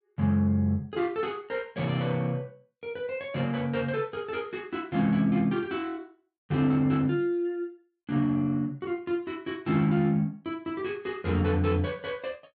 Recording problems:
none

